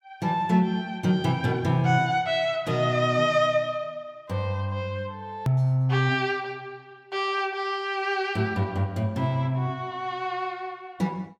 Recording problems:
click at an edit; at 5.5 s

